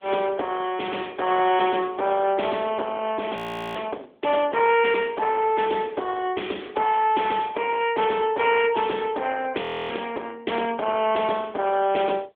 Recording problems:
phone line; 320 Hz to 3.4 kHz, AMR-NB
distorted audio; soft clipping, signal-to-distortion ratio 13 dB
audio freezing; at 3.5 s and at 9.5 s

